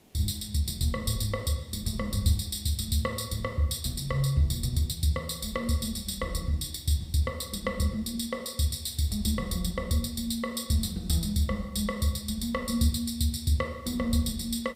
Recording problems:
background hiss; SNR 29 dB

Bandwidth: 15.5 kHz